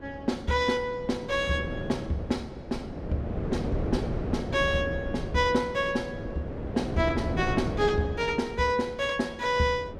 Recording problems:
wind on the microphone; below 430 Hz, SNR 6 dB

